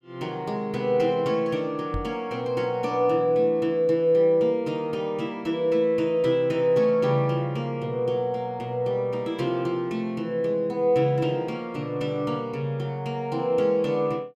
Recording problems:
microphone bump; at 2 s; peak -4 dB vs average level

